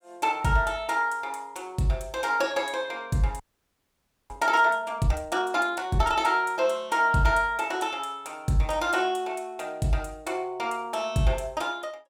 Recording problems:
frozen audio; at 3.5 s for 1 s

